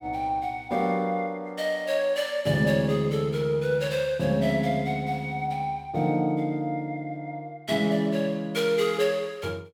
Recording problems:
none

